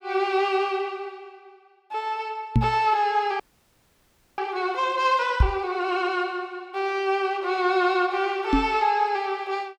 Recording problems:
knock on the microphone; at 2.5 s, at 5.5 s and at 8.5 s; peak +9 dB vs average level
audio freezing; at 3.5 s for 1 s

